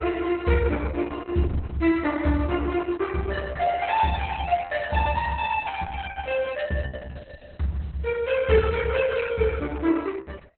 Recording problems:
lossy compression; Opus, log-spectral distance 4 dB, nothing above 3.8 kHz

